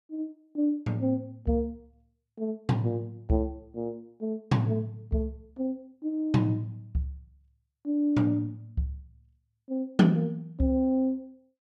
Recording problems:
none

